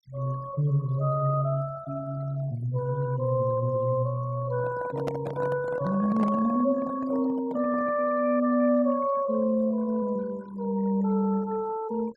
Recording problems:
denoising artefacts; signal-to-artefact ratio 20 dB
microphone handling noise; from 4.5 to 8 s; peak -3 dB vs average level

